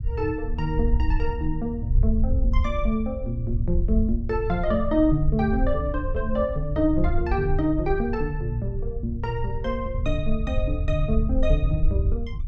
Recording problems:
rumble; below 70 Hz, SNR 2 dB

